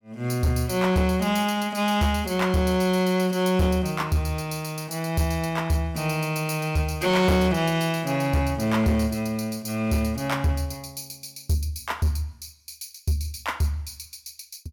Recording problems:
distortion; hard clipping, signal-to-distortion ratio 11 dB

